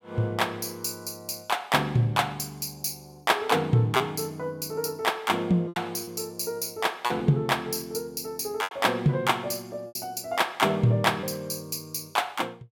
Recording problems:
packet loss; 3% of the sound replaced, filled with repeated pitch periods

